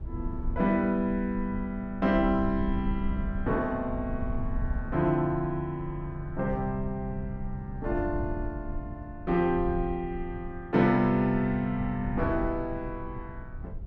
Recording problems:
rumble; below 88 Hz, SNR 9 dB

